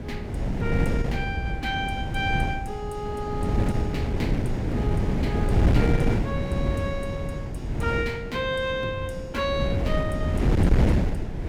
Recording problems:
wind on the microphone; below 240 Hz, SNR -4 dB

